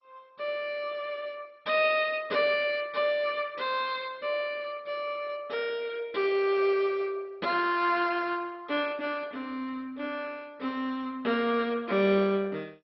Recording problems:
lossy compression; MP2, log-spectral distance 3 dB

